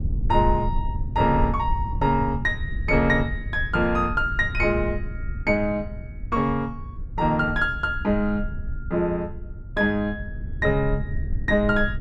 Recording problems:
low-frequency rumble; below 86 Hz, SNR 8 dB

